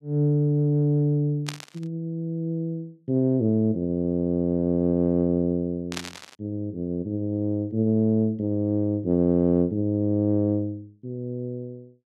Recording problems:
burst of static; at 1.5 s and at 6 s; peak -3 dB vs average level

